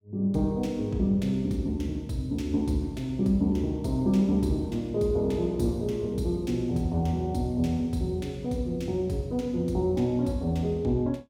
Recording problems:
none

